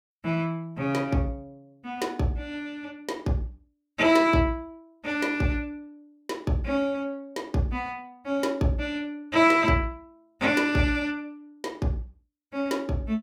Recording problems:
none

